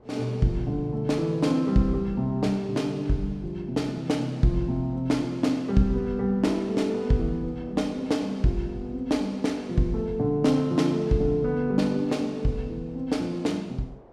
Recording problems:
wind on the microphone; below 720 Hz, SNR 28 dB

